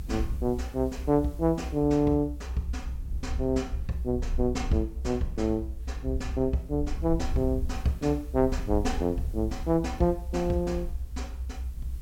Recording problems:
background hiss; slope -2 dB per octave, SNR 29 dB
low-frequency rumble; below 66 Hz, SNR 7 dB

